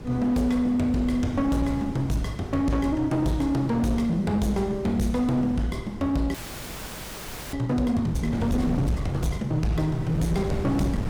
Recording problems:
distortion; hard clipping, uneven, signal-to-distortion ratio 11 dB
wind on the microphone; below 210 Hz, SNR 10 dB
audio freezing; at 6.5 s for 1 s

